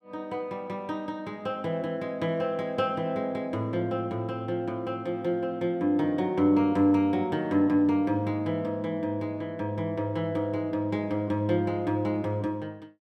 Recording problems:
none

